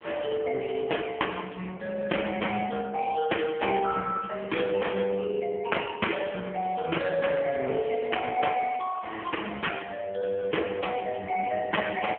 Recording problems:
phone line; 260 Hz to 3.1 kHz, AMR-NB
crackling; at 8.5 s; loose cable, SNR 21 dB

